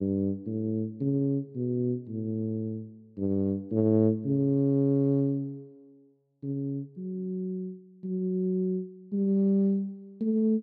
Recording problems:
none

